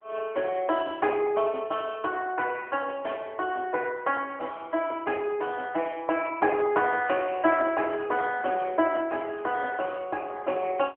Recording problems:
phone line; 260 Hz to 3.2 kHz, AMR-NB

